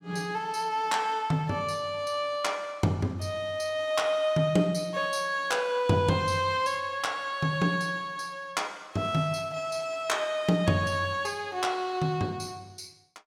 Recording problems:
none

